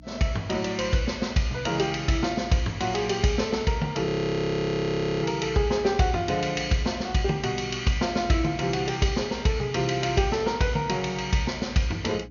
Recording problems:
treble cut off; nothing above 6.8 kHz
electrical hum; 60 Hz, harmonics up to 300 Hz, SNR 21 dB
audio freezing; at 4 s for 1 s

